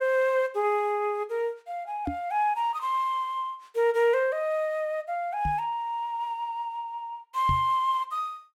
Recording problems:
microphone bump; at 2 s, at 5.5 s and at 7.5 s; peak 0 dB vs average level

